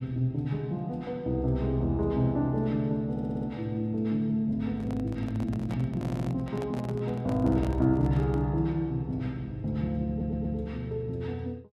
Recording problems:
audio stuttering; at 3 s, at 6 s and at 10 s
handling noise; from 4.5 to 8.5 s; peak -7 dB vs average level

